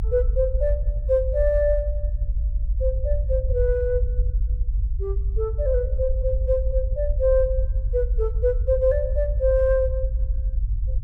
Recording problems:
rumble; below 56 Hz, SNR 1 dB

